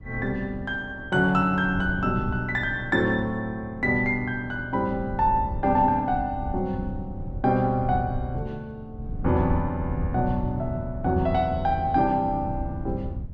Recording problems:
wind on the microphone; below 130 Hz, SNR 10 dB

